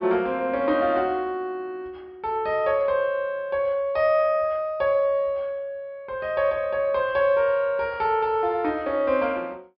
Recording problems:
treble cut off; nothing above 5.5 kHz

